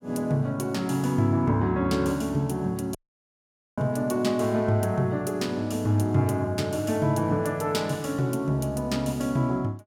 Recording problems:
audio cutting out; at 3 s for 1 s

